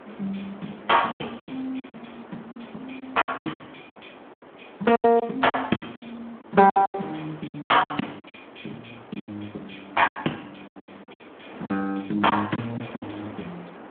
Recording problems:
telephone audio; 170 Hz to 3.4 kHz, Speex
wind noise; below 1.2 kHz, SNR 20 dB
packet loss; 14% of the sound replaced, filled with silence

